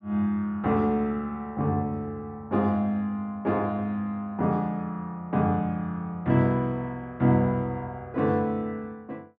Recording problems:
none

